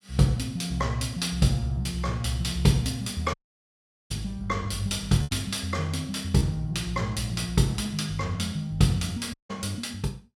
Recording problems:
packet loss; 1.7% of the sound replaced, filled with repeated pitch periods
dropout; at 3.5 s for 1 s and at 9.5 s

